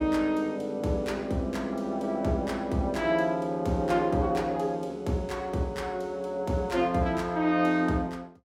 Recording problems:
none

